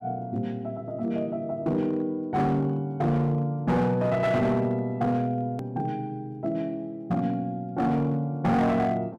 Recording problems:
distortion; hard clipping, signal-to-distortion ratio 11 dB
click at an edit; at 5.5 s

